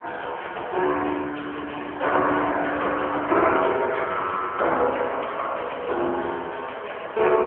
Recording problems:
phone line; 320 Hz to 3.1 kHz, AMR-NB

